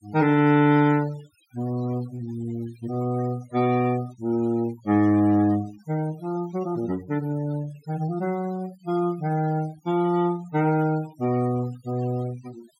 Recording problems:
denoising artefacts; signal-to-artefact ratio 21 dB

